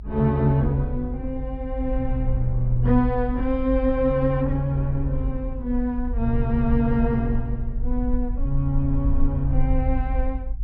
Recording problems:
low-pass filter; nothing above 5.5 kHz
rumble; below 50 Hz, SNR 5 dB

